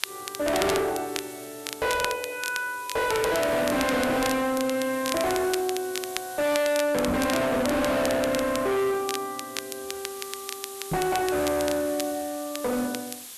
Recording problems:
distortion; hard clipping, uneven, signal-to-distortion ratio 6 dB
hiss; slope +2 dB per octave, SNR 14 dB
crackling; vinyl, SNR 10 dB
knock on the microphone; at 7 s and at 11 s; peak 0 dB vs average level

